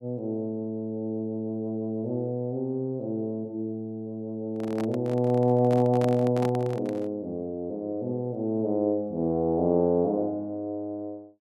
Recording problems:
microphone handling noise; from 4.5 to 7 s; peak -3 dB vs average level

